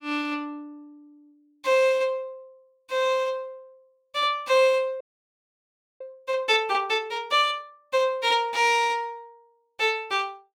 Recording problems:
audio freezing; at 5 s for 1 s

